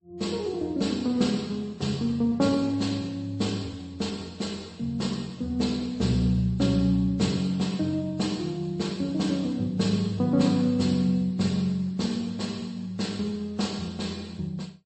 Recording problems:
lossy compression; Vorbis, then MP3, log-spectral distance 3 dB, nothing above 8.2 kHz

